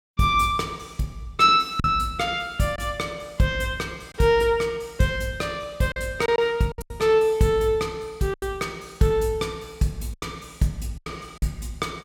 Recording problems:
packet loss; 5% of the sound replaced, filled with silence

